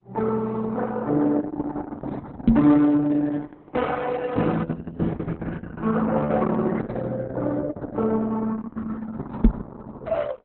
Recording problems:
lossy compression; Opus, then Opus, log-spectral distance 3 dB, nothing above 4 kHz
microphone bump; at 2.5 s and at 9.5 s; peak +12 dB vs average level

